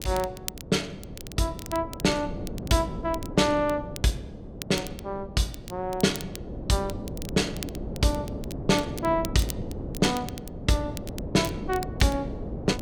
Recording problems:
wind noise; below 360 Hz, SNR 9 dB
crackling; vinyl, SNR 15 dB

